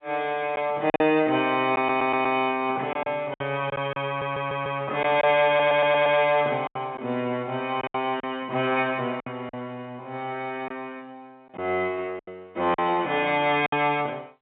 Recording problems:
telephone audio; 190 Hz to 3.6 kHz, G.711
lost packets; 7% of the sound replaced, filled with silence
stutter; at 2 s, at 4 s and at 5.5 s

